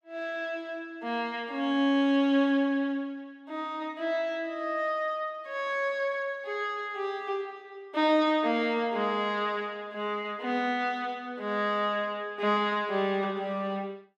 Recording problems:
none

